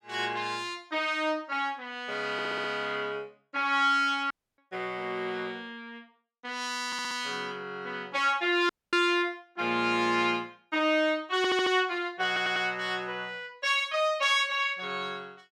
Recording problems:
stutter; 4 times, first at 2.5 s
audio cutting out; at 4.5 s and at 8.5 s

